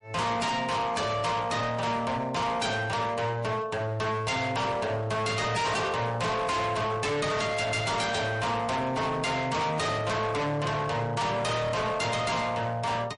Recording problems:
lossy codec; MP3, log-spectral distance 3 dB, nothing above 10.4 kHz
distorted audio; hard clipping, signal-to-distortion ratio 6 dB

